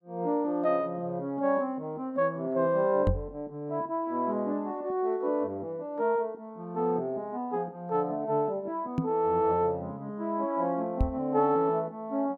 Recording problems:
knock on the microphone; at 3 s, at 9 s and at 11 s; peak +6 dB vs average level

